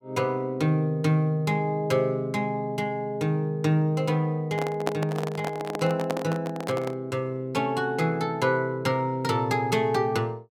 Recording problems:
handling noise; from 4.5 to 7 s; peak +2 dB vs average level

